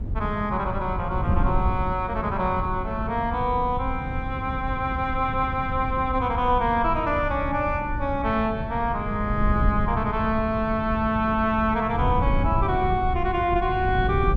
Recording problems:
wind noise; below 130 Hz, SNR 5 dB

